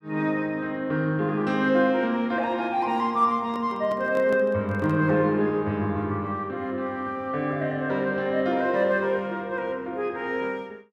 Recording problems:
handling noise; from 3.5 to 5 s; peak -8 dB vs average level

